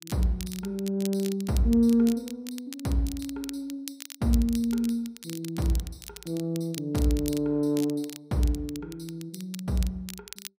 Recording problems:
crackling; vinyl, SNR 15 dB

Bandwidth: 15.5 kHz